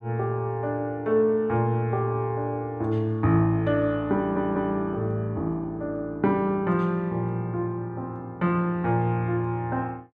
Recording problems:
audio stuttering; at 4 s

